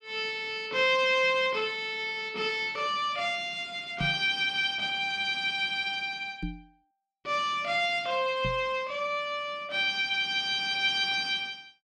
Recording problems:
microphone bump; at 4 s, at 6.5 s and at 8.5 s; peak -2 dB vs average level

